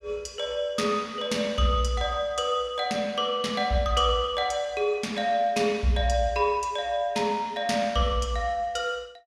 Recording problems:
none

